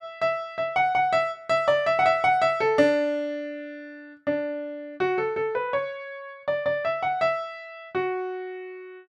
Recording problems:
none

